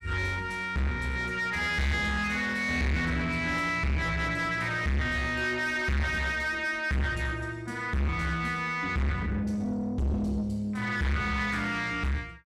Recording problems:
distorted audio; soft clipping, signal-to-distortion ratio 5 dB

